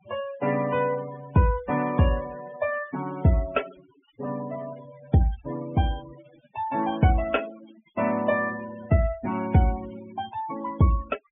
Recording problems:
treble cut off; nothing above 3.5 kHz
noise reduction artefacts; signal-to-artefact ratio 17 dB

